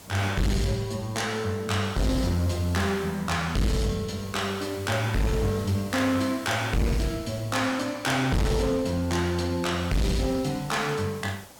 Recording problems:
distortion; hard clipping, signal-to-distortion ratio 6 dB
background hiss; SNR 20 dB

